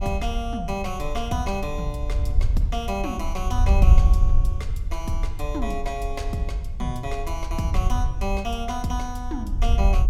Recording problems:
wind on the microphone; below 66 Hz, SNR -3 dB

